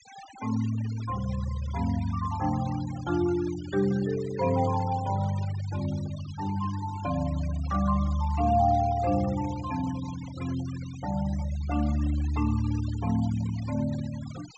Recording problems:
treble cut off; nothing above 8 kHz
noise reduction artefacts; signal-to-artefact ratio 17 dB

